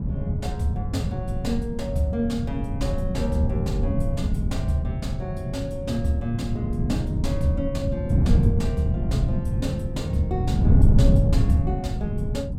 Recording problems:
wind noise; below 150 Hz, SNR -4 dB

